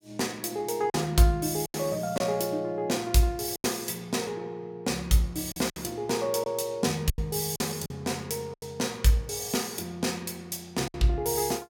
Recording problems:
lost packets; 6% of the sound replaced, filled with silence

